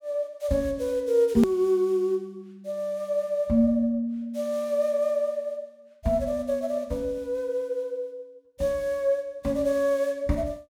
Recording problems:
hard cut with a click; at 1.5 s

